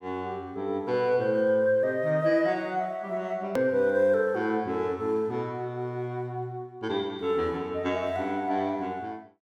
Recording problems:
click at an edit; at 3.5 s

